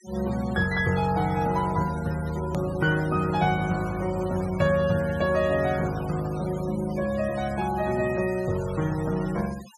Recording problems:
noise reduction artefacts; signal-to-artefact ratio 17 dB
hard cut with a click; at 2.5 s

